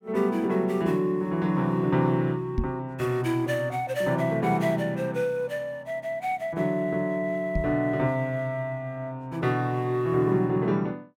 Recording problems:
knock on the microphone; at 2.5 s and at 7.5 s; peak +3 dB vs average level

